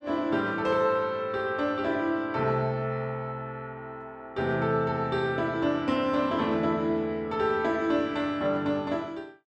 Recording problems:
none

